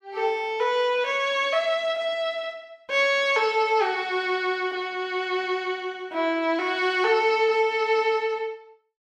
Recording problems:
none

